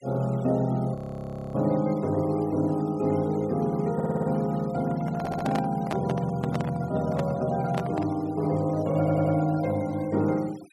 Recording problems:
denoising artefacts; signal-to-artefact ratio 23 dB
audio freezing; at 1 s for 0.5 s
stutter; at 4 s, at 5 s and at 9 s
handling noise; from 5 to 8 s; peak -1 dB vs average level

